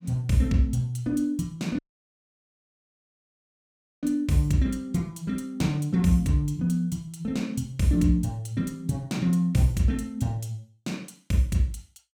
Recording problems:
dropout; at 2 s for 2 s

